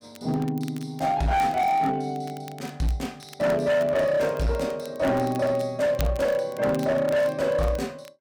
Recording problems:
distorted audio; hard clipping, signal-to-distortion ratio 10 dB
crackle; vinyl, SNR 23 dB

